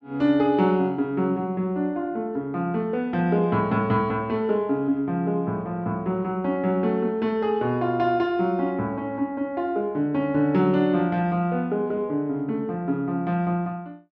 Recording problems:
none

